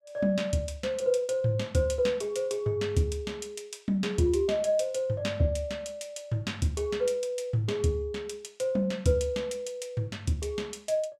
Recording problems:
none

